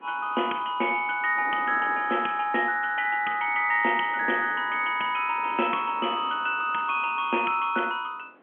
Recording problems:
phone line; 190 Hz to 3.3 kHz, G.711
wind on the microphone; below 1 kHz, SNR 21 dB

